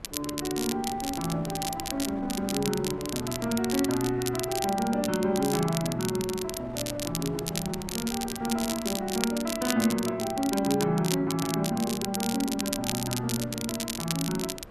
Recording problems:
wind on the microphone; below 650 Hz, SNR 17 dB
crackling; vinyl, SNR 5 dB

